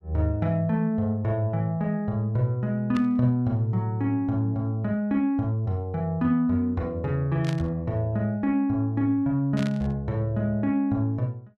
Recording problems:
static burst; at 3 s, at 7.5 s and at 9.5 s; peak -8 dB vs average level

